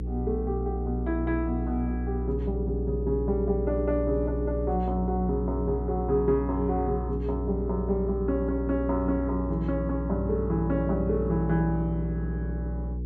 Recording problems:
hum; 60 Hz, harmonics up to 480 Hz, SNR 3 dB

